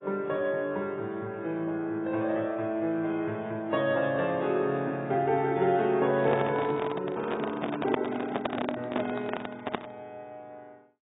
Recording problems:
codec artefacts; AAC, log-spectral distance 2 dB, nothing above 3.2 kHz
handling noise; from 6 to 10 s; peak +4 dB vs average level

